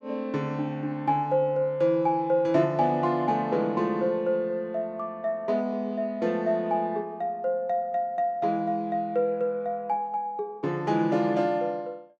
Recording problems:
none

